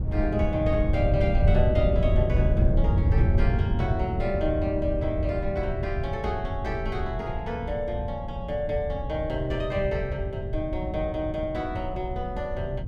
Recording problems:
low-frequency rumble; below 120 Hz, SNR -1 dB

